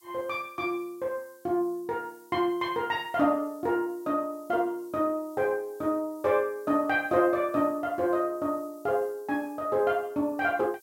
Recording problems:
hiss; SNR 28 dB

